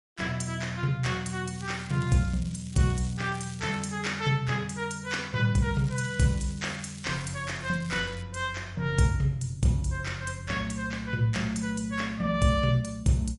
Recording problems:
lossy compression; MP3, log-spectral distance 3 dB, nothing above 10.7 kHz
crackling; from 1.5 to 4 s and from 5.5 to 8 s; loose cable, SNR 19 dB

